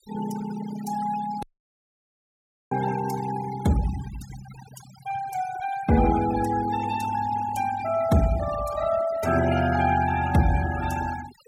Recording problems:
denoising artefacts; signal-to-artefact ratio 13 dB
audio cutting out; at 1.5 s for 1.5 s

